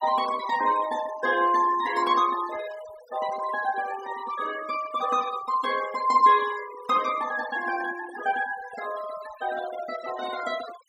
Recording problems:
denoising artefacts; signal-to-artefact ratio 15 dB

